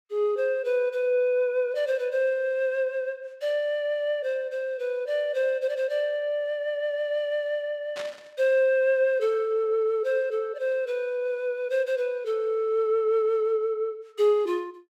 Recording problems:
burst of static; at 8 s; peak -8 dB vs average level

